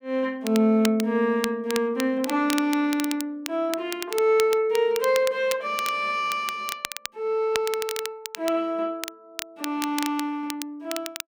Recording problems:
crackling; vinyl, SNR 10 dB

